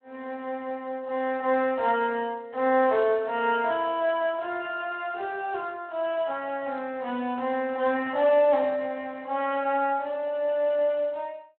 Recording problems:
telephone audio; 300 Hz to 3.4 kHz, Speex

